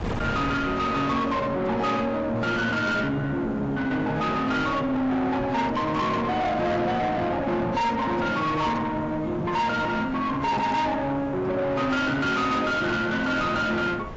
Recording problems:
lossy compression; AAC, log-spectral distance 2 dB, nothing above 7.3 kHz
distorted audio; soft clipping, signal-to-distortion ratio 7 dB
wind noise; below 1.1 kHz, SNR 14 dB

